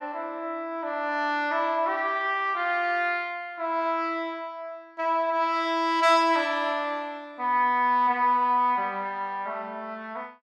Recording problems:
none

